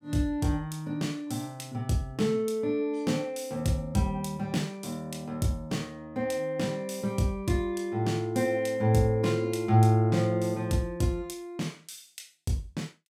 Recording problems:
none

